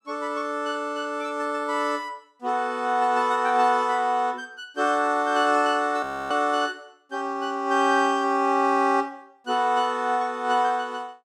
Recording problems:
audio freezing; at 6 s

